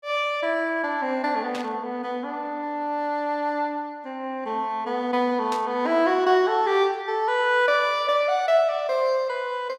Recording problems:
burst of static; at 1.5 s and at 5.5 s; peak -7 dB vs average level

